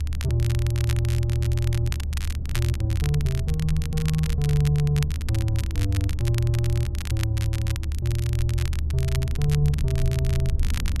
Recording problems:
rumble; below 78 Hz, strongest tone 74 Hz, SNR 2 dB
crackling; vinyl, SNR 12 dB

